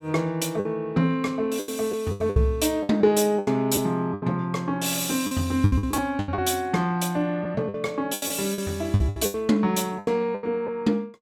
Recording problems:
packet loss; 13% of the sound replaced, filled with the last packet

